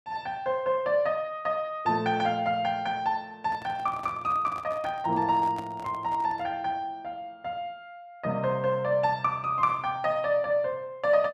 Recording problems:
handling noise; from 3.5 to 6.5 s; peak -8 dB vs average level

